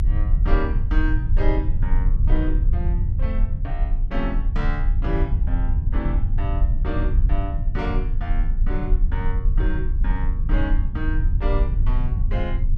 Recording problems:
low-frequency rumble; below 60 Hz, strongest tone 28 Hz, SNR -8 dB

